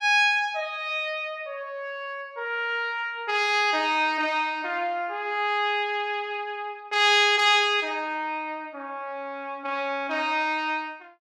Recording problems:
none

